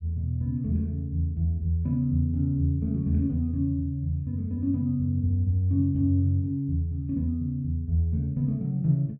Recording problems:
none

